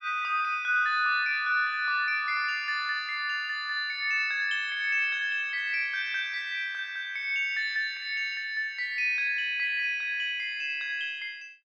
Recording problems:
none

